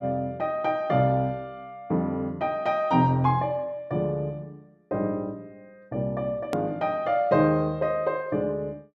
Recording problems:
hard cut with a click; at 6.5 s

